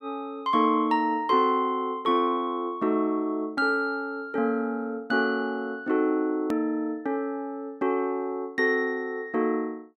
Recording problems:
edit click; at 6.5 s

